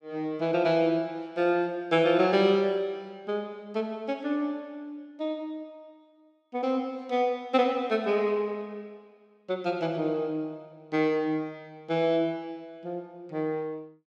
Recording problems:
none

